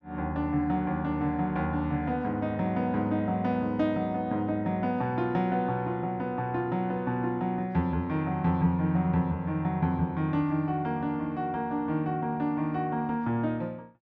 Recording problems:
none

